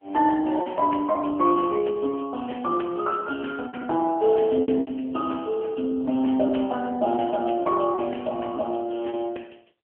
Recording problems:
phone line; 240 Hz to 3.2 kHz, AMR-NB
packet loss; 6% of the sound replaced, filled with repeated pitch periods

